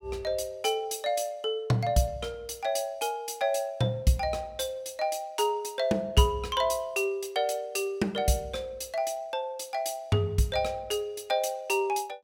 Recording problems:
none

